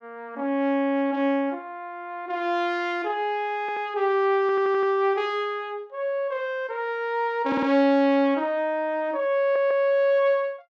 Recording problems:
audio stuttering; 4 times, first at 3.5 s

